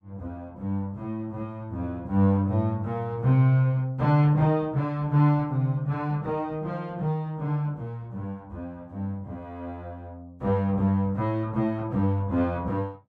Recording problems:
none

